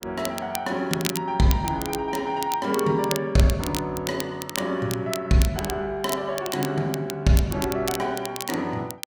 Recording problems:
crackling; vinyl, SNR 9 dB

